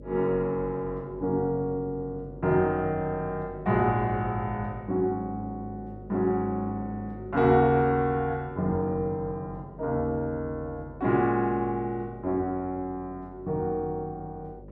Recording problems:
electrical hum; 50 Hz, harmonics up to 600 Hz, SNR 18 dB

